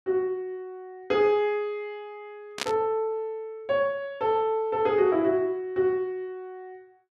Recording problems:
burst of static; at 2.5 s; peak +2 dB vs average level

